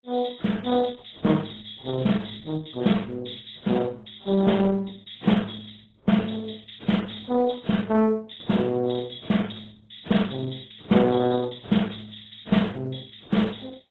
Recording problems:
lossy compression; AAC, then Opus, log-spectral distance 9 dB, nothing above 3.9 kHz

